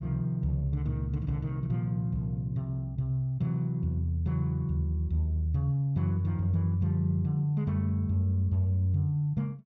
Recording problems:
none

